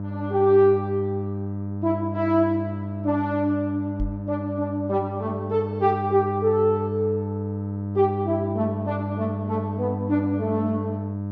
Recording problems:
treble missing; nothing above 8 kHz
hum; 50 Hz, harmonics up to 900 Hz, SNR 6 dB
microphone thump; at 4 s; peak -1 dB vs average level

